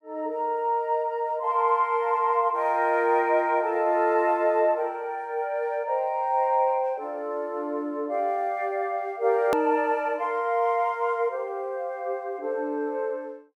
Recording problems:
hard cut with a click; at 9.5 s

